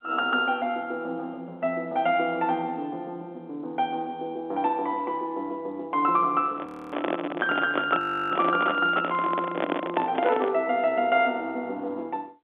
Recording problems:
phone line; 220 Hz to 4 kHz, G.711
microphone handling noise; from 6.5 to 11 s; peak +4 dB vs average level
frozen audio; at 6.5 s and at 8 s

